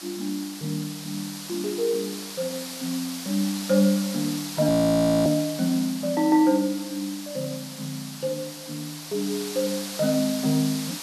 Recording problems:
hiss; slope +1 dB per octave, SNR 9 dB
frozen audio; at 4.5 s for 0.5 s

